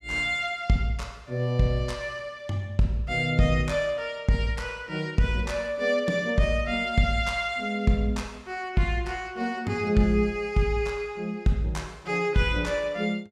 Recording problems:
none

